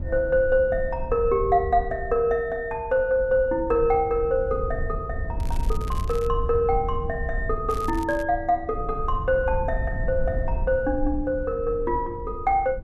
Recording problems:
rumble; below 76 Hz, SNR 9 dB
crackle; at 5.5 s and at 7.5 s; loose cable, SNR 22 dB

